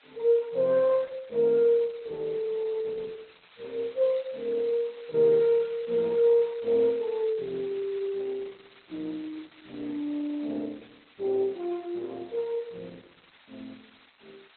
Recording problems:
codec artefacts; Opus, then AAC, log-spectral distance 15 dB, nothing above 4 kHz
hiss; SNR 27 dB

